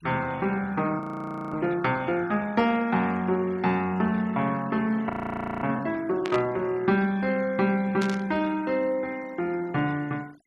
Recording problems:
noise reduction artefacts; signal-to-artefact ratio 24 dB
audio freezing; at 1 s for 0.5 s and at 5 s for 0.5 s
static burst; at 6.5 s and at 8 s; peak -4 dB vs average level

